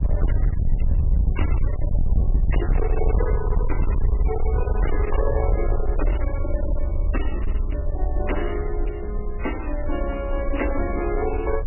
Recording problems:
codec artefacts; MP3, log-spectral distance 3 dB, nothing above 2.8 kHz
distorted audio; hard clipping, uneven, signal-to-distortion ratio 5 dB
rumble; below 68 Hz, SNR -4 dB

